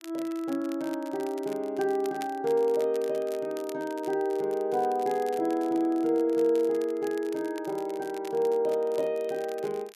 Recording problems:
crackle; vinyl, SNR 22 dB

